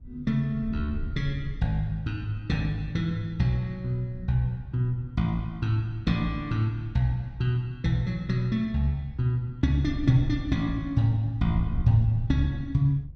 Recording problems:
wind on the microphone; below 88 Hz, SNR 13 dB

